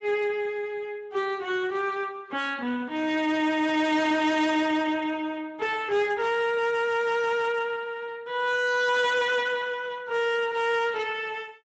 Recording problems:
codec artefacts; Speex, log-spectral distance 4 dB, nothing above 7.6 kHz
distorted audio; hard clipping, signal-to-distortion ratio 12 dB

